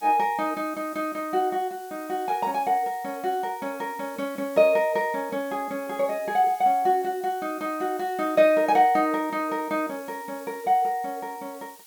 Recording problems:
hiss; slope +2 dB per octave, SNR 22 dB

